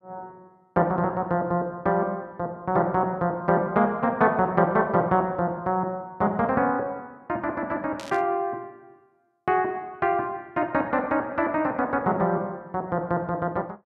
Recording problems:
static burst; at 8 s; peak -10 dB vs average level

